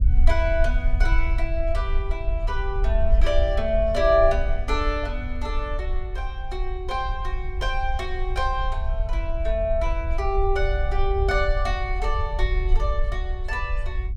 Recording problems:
rumble; below 54 Hz, SNR 0 dB

